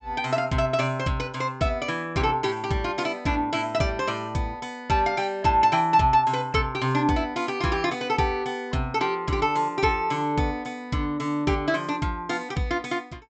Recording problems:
treble cut off; nothing above 8 kHz

